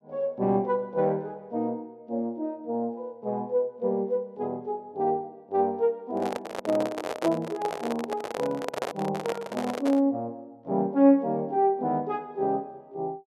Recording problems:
handling noise; from 6 to 10 s; peak +3 dB vs average level

